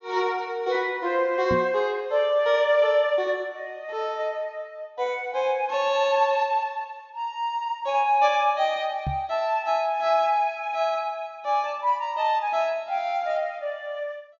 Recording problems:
treble cut off; nothing above 6.9 kHz
microphone thump; at 1.5 s and at 9 s; peak -1 dB vs average level

